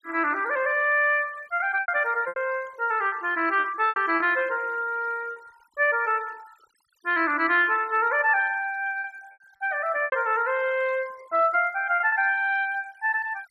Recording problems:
denoising artefacts; signal-to-artefact ratio 25 dB
packet loss; 6% of the sound replaced, filled with repeated pitch periods

